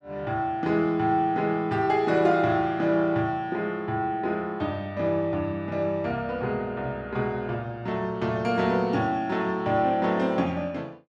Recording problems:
none

